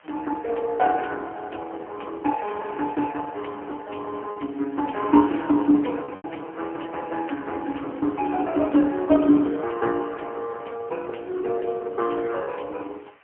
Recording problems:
telephone audio; 240 Hz to 3.4 kHz, AMR-NB, then MP3
hiss; SNR 28 dB
packet loss; 1.2% of the sound replaced, filled with repeated pitch periods

